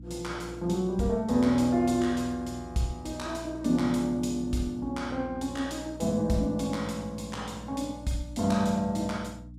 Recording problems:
hum; 60 Hz, harmonics up to 300 Hz, SNR 16 dB

